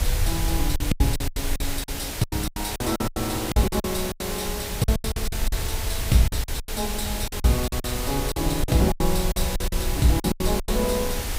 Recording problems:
background hiss; slope -2 dB per octave, SNR 4 dB
low-frequency rumble; below 66 Hz, SNR 6 dB
lost packets; 17% of the sound replaced, filled with silence

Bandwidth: 15.5 kHz